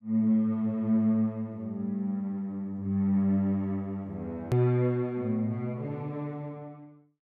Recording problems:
edit click; at 4.5 s

